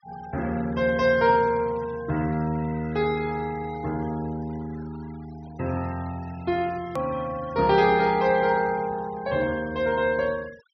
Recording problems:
treble missing; nothing above 6 kHz
noise reduction artefacts; signal-to-artefact ratio 22 dB
edit click; at 7 s

